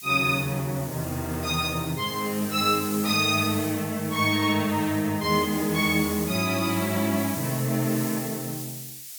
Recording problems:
hiss; SNR 10 dB

